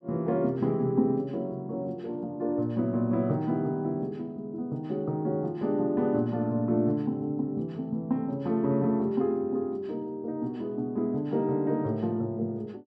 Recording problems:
none

